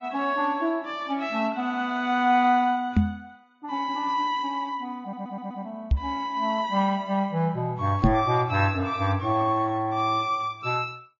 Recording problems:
lossy compression; MP3, then Vorbis, log-spectral distance 2 dB, nothing above 6.9 kHz
microphone thump; at 3 s, at 6 s and at 8 s; peak +9 dB vs average level
audio stuttering; at 5 s

